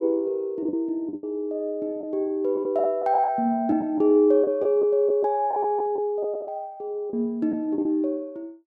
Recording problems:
lost packets; 7% of the sound replaced, filled with the last packet

